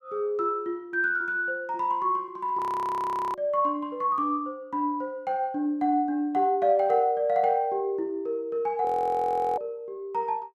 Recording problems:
frozen audio; at 2.5 s for 1 s and at 9 s for 0.5 s

